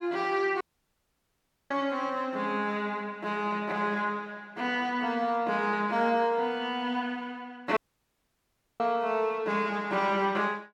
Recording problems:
dropout; at 0.5 s for 1 s and at 8 s for 1 s

